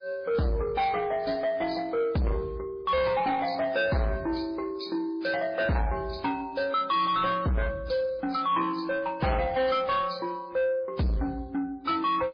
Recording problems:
lossy codec; MP3, then AAC, log-spectral distance 3 dB, nothing above 5 kHz
distortion; soft clipping, signal-to-distortion ratio 6 dB

